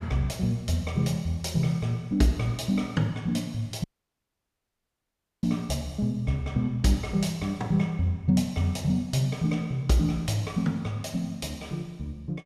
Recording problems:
dropout; at 4 s for 1.5 s

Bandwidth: 15 kHz